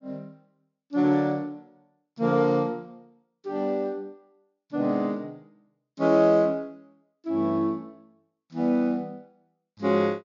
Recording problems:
treble missing; nothing above 6.9 kHz

